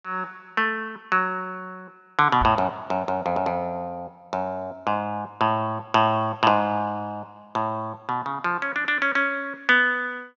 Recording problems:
microphone bump; at 2.5 s; peak -2 dB vs average level

